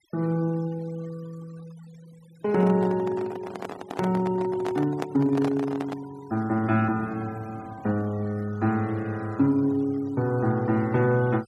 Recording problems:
denoising artefacts; signal-to-artefact ratio 23 dB
handling noise; from 2.5 to 6 s; peak -2 dB vs average level

